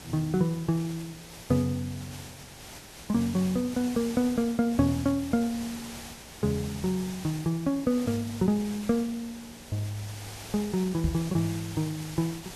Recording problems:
hum; 60 Hz, harmonics up to 540 Hz, SNR 29 dB
hiss; slope -2 dB per octave, SNR 14 dB
knock on the microphone; at 11 s; peak +4 dB vs average level

